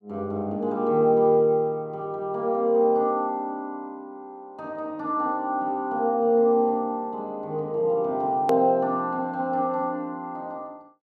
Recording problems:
edit click; at 8.5 s

